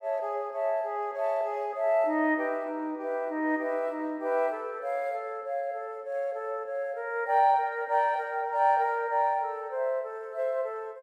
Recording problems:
none

